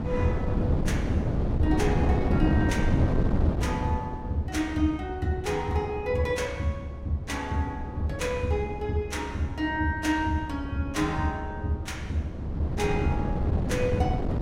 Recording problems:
wind noise; below 280 Hz, SNR 2 dB

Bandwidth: 16 kHz